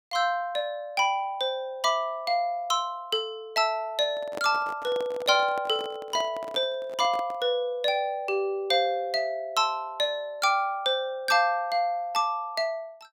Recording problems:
microphone handling noise; from 4 to 7.5 s; peak -5 dB vs average level

